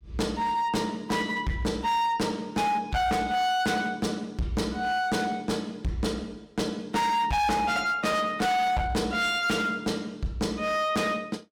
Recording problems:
distorted audio; hard clipping, signal-to-distortion ratio 7 dB

